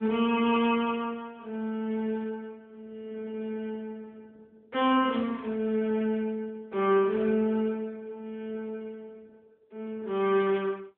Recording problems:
telephone audio; 220 Hz to 3.5 kHz, AMR-NB

